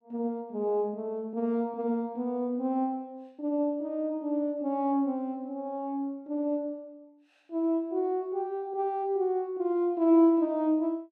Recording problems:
none

